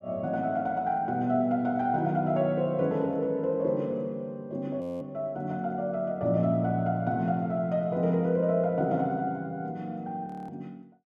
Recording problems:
frozen audio; at 5 s and at 10 s

